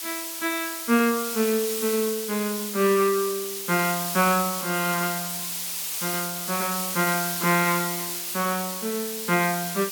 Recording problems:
background hiss; slope +3 dB per octave, SNR 3 dB

